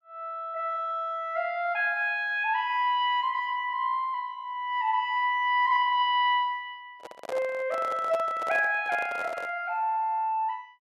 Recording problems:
microphone handling noise; from 7 to 9.5 s; peak -5 dB vs average level

